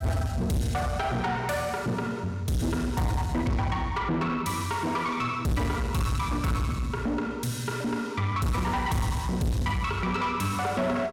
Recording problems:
distorted audio; soft clipping, signal-to-distortion ratio 7 dB

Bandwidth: 17 kHz